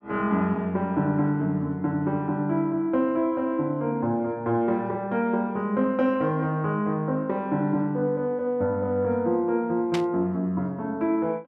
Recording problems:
static burst; at 10 s; peak -2 dB vs average level

